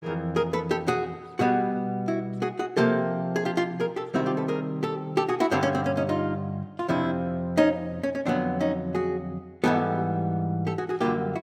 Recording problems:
none

